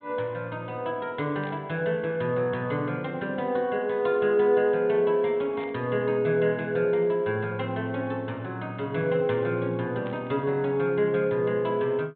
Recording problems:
low-pass filter; nothing above 4 kHz
burst of static; at 1.5 s, at 5.5 s and at 10 s; peak -15 dB vs average level

